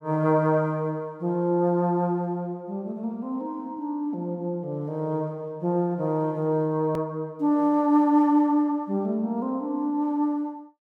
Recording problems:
edit click; at 7 s

